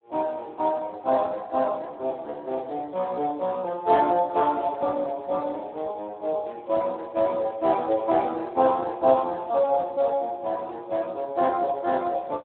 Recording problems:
telephone audio; 190 Hz to 3.9 kHz, Speex

